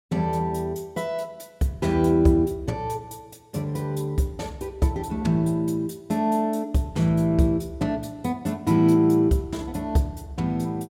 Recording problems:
none

